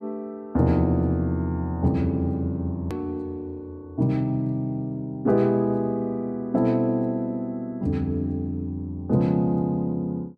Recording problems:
hard cut with a click; at 3 s

